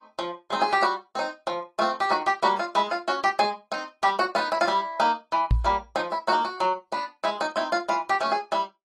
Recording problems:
lossy compression; AAC, log-spectral distance 2 dB
knock on the microphone; at 5.5 s; peak +6 dB vs average level

